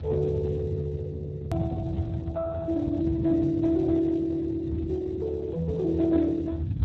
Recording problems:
lossy codec; MP2, then Speex, log-spectral distance 3 dB
rumble; below 130 Hz, strongest tone 78 Hz, SNR 8 dB
click at an edit; at 1.5 s

